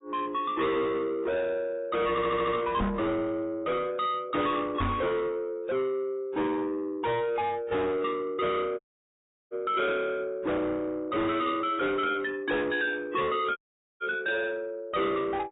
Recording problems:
treble missing; nothing above 3.8 kHz
lossy compression; AAC, log-spectral distance 2 dB
distortion; soft clipping, signal-to-distortion ratio 6 dB
audio stuttering; at 2 s
microphone bump; at 3 s and at 5 s; peak +5 dB vs average level
dropout; at 9 s for 0.5 s and at 14 s

